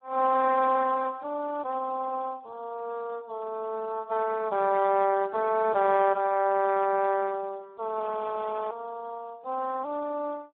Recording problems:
phone line; 280 Hz to 2.6 kHz, Speex
frozen audio; at 8 s for 0.5 s

